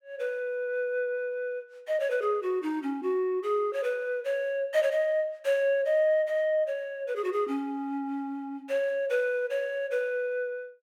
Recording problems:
none

